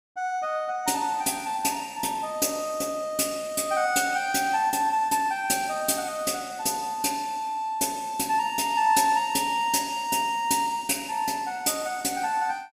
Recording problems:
none

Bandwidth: 15.5 kHz